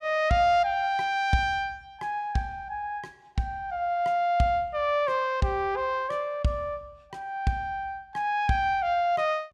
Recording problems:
none

